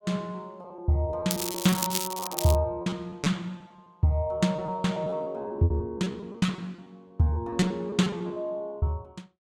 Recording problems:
lost packets; 16% of the sound replaced, filled with repeated pitch periods
crackle; from 1.5 to 2.5 s; loose cable, SNR 3 dB

